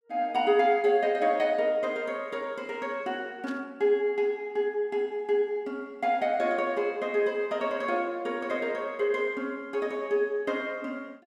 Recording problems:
burst of static; at 3.5 s; peak -14 dB vs average level

